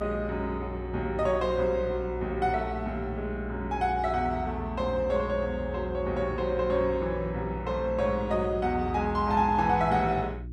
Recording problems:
electrical hum; 60 Hz, harmonics up to 360 Hz, SNR 11 dB

